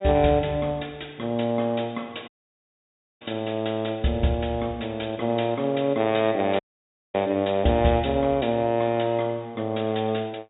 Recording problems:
low-pass filter; nothing above 4 kHz
dropout; at 2.5 s for 1 s and at 6.5 s for 0.5 s

